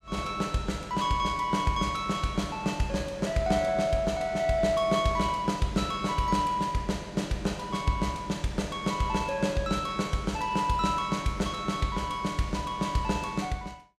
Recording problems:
none

